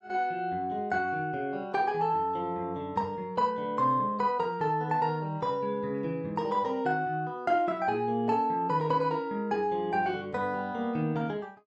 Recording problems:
none

